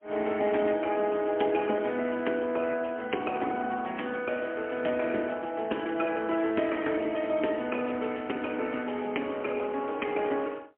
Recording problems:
telephone audio; 220 Hz to 3.2 kHz, AMR-NB, then MP3

